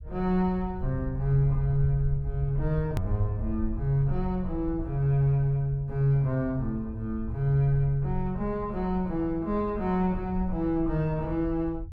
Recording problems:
rumble; below 72 Hz, SNR 10 dB
hard cut with a click; at 3 s

